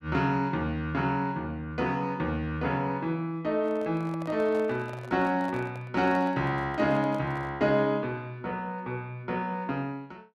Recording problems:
microphone handling noise; from 3.5 to 7.5 s; peak -9 dB vs average level

